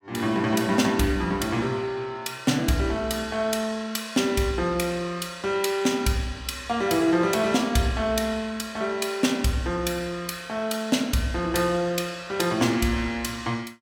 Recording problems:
none

